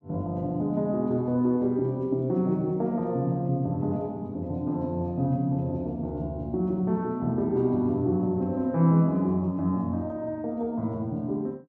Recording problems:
none

